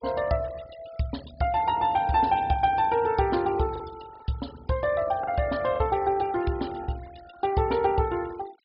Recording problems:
treble cut off; nothing above 5.5 kHz
denoising artefacts; signal-to-artefact ratio 20 dB
packet loss; 2% of the sound replaced, filled with the last packet

